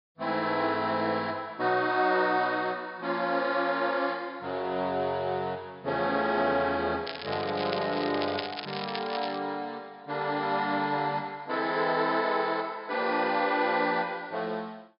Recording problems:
treble cut off; nothing above 5.5 kHz
crackle; from 7 to 9.5 s; loose cable, SNR 10 dB

